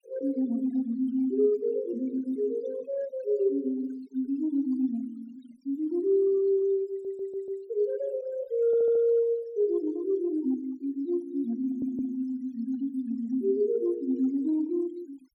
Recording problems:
denoising artefacts; signal-to-artefact ratio 28 dB
audio stuttering; at 7 s, at 8.5 s and at 12 s

